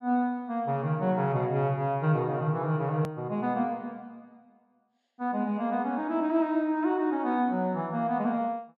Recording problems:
edit click; at 3 s

